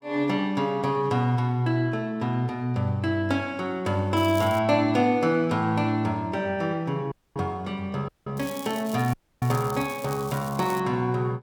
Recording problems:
crackle; at 4 s and from 8.5 to 11 s; loose cable, SNR 17 dB
dropout; at 7 s, at 8 s and at 9 s

